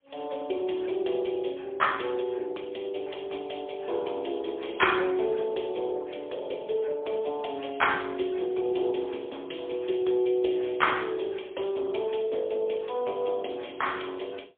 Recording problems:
telephone audio; 300 Hz to 3.4 kHz, AMR-NB, then MP3

